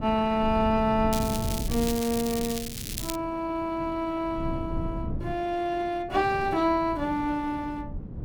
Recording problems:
wind on the microphone; below 180 Hz, SNR 9 dB
crackling; from 1 to 3 s; loose cable, SNR 7 dB

